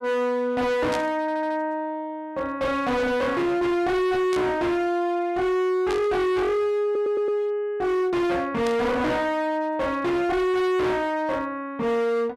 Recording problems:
distortion; hard clipping, signal-to-distortion ratio 6 dB
static burst; 4 times, first at 1 s; peak -6 dB vs average level
stutter; at 1 s and at 7 s

